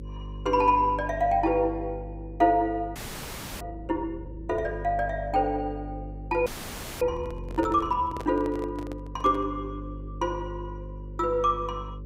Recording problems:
hum; 50 Hz, harmonics up to 550 Hz, SNR 12 dB
audio freezing; at 3 s for 0.5 s and at 6.5 s for 0.5 s
microphone handling noise; from 7 to 9.5 s; peak -6 dB vs average level

